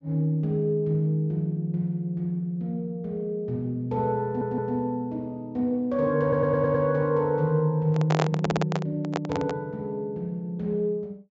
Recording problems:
treble missing; nothing above 8 kHz
stutter; at 4.5 s, at 6 s and at 8.5 s
handling noise; from 8 to 9.5 s; peak +4 dB vs average level

